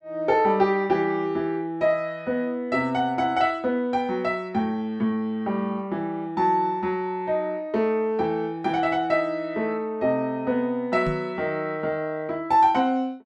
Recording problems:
knock on the microphone; at 11 s; peak -2 dB vs average level

